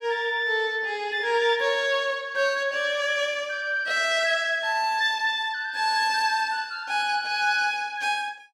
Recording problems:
none

